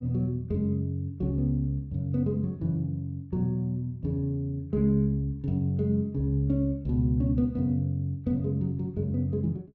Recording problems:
none

